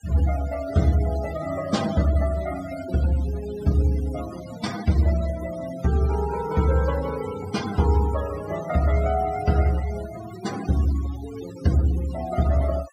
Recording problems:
denoising artefacts; signal-to-artefact ratio 15 dB

